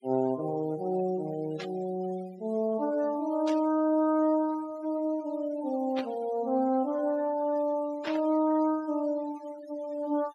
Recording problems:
noise reduction artefacts; signal-to-artefact ratio 21 dB
burst of static; 4 times, first at 1.5 s; peak -5 dB vs average level

